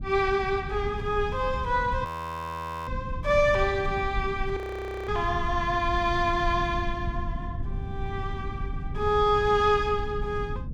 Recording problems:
rumble; below 110 Hz, SNR 9 dB
audio freezing; at 2 s for 1 s and at 4.5 s for 0.5 s

